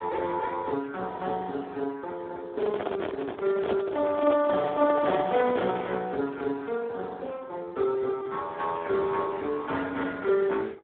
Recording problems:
phone line; 240 Hz to 4 kHz, Speex
microphone handling noise; from 2.5 to 6 s; peak +3 dB vs average level

